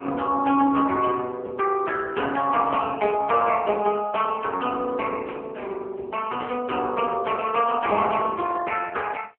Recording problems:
phone line; 240 Hz to 3.1 kHz, AMR-NB

